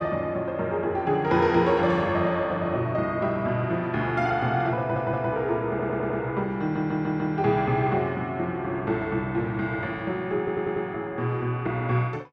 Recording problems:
stutter; 4 times, first at 5 s

